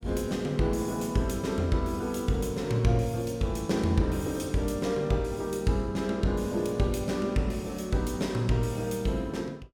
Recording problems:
none

